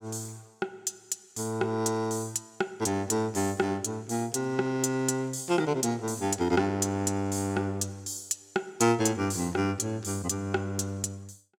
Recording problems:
none

